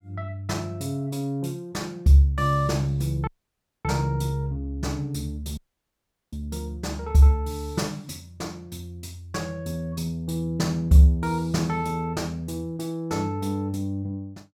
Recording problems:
dropout; at 3.5 s for 0.5 s and at 5.5 s for 1 s

